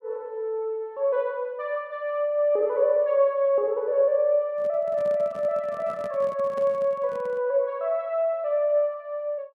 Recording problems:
handling noise; from 4.5 to 7.5 s; peak -12 dB vs average level

